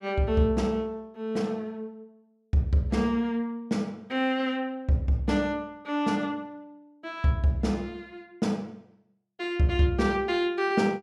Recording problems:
none

